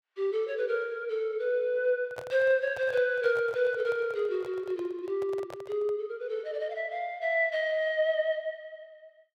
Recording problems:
handling noise; from 2 to 6 s; peak -7 dB vs average level

